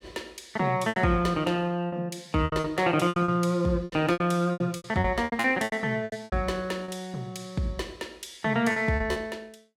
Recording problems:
lost packets; 13% of the sound replaced, filled with repeated pitch periods

